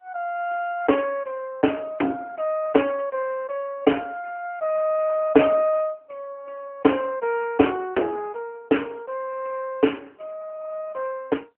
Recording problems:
phone line; 240 Hz to 3.1 kHz, AMR-NB

